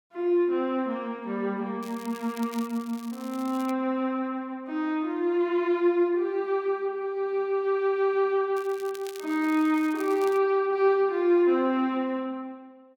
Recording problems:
crackle; from 2 to 3.5 s and from 8.5 to 10 s; loose cable, SNR 21 dB

